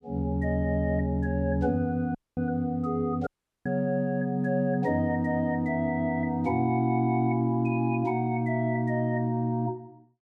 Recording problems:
dropout; at 2 s and at 3.5 s

